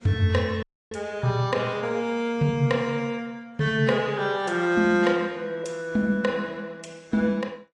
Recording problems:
codec artefacts; AAC, log-spectral distance 2 dB
dropout; at 0.5 s

